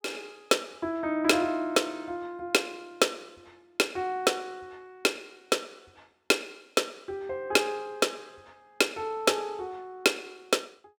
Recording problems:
none

